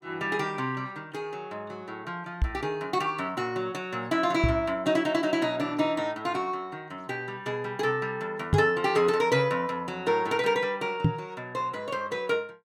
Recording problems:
microphone bump; 4 times, first at 2.5 s; peak +8 dB vs average level

